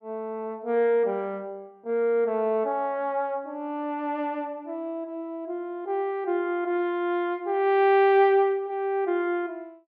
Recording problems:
none

